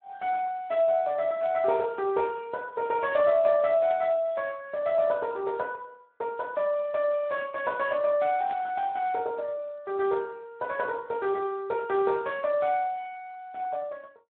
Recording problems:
phone line; 130 Hz to 3.3 kHz, Speex
burst of static; 4 times, first at 1.5 s; peak -13 dB vs average level

